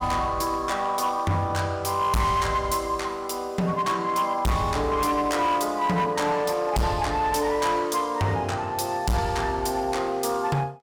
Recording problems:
distortion; hard clipping, signal-to-distortion ratio 7 dB

